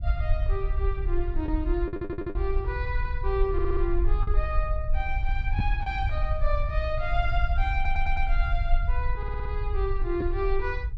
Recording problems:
rumble; below 56 Hz, SNR -2 dB
lost packets; 1.7% of the sound replaced, filled with the last packet
stutter; 4 times, first at 2 s

